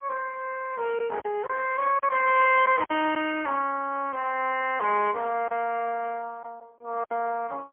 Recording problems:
phone line; 260 Hz to 3.1 kHz, AMR-NB, then MP3
lost packets; 4% of the sound replaced, filled with silence

